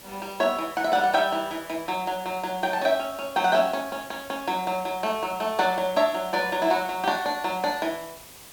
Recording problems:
background hiss; slope -1 dB per octave, SNR 19 dB

